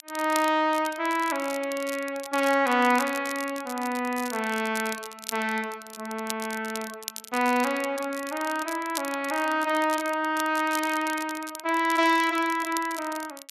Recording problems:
crackle; vinyl, SNR 13 dB

